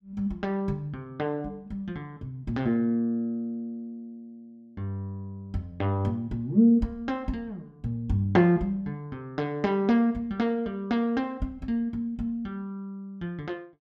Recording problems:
none

